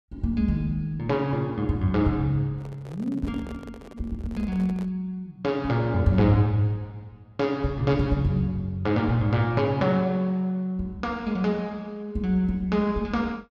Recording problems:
microphone handling noise; from 2.5 to 5 s; peak -12 dB vs average level

